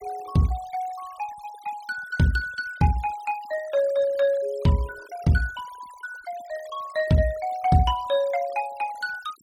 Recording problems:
noise reduction artefacts; signal-to-artefact ratio 21 dB

